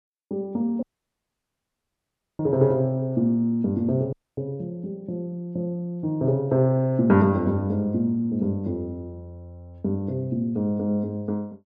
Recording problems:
audio cutting out; at 1 s for 1.5 s and at 4 s

